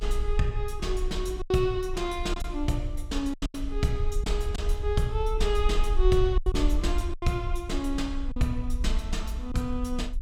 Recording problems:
rumble; below 50 Hz, SNR 2 dB
packet loss; 6% of the sound replaced, filled with silence

